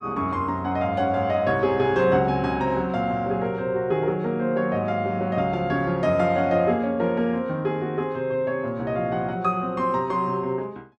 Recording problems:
none

